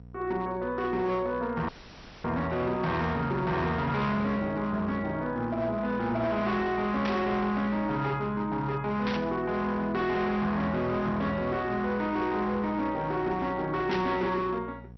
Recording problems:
lossy compression; MP2, log-spectral distance 2 dB, nothing above 5.8 kHz
distortion; hard clipping, signal-to-distortion ratio 12 dB
hum; 60 Hz, harmonics up to 720 Hz, SNR 19 dB
dropout; at 1.5 s for 0.5 s
static burst; at 7 s, at 9 s and at 14 s; peak -2 dB vs average level

